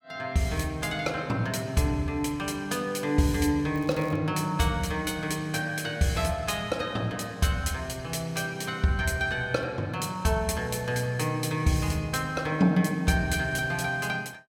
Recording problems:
crackling; at 4 s; loose cable, SNR 26 dB

